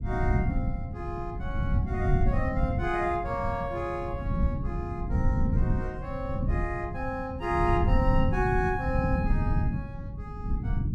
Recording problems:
low-frequency rumble; below 150 Hz, SNR -2 dB

